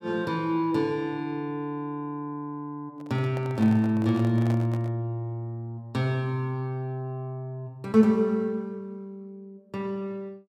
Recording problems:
handling noise; from 3 to 5 s; peak -6 dB vs average level

